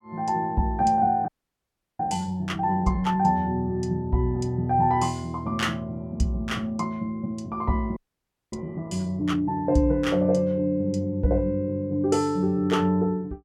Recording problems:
audio freezing; at 1.5 s for 0.5 s and at 8 s for 0.5 s

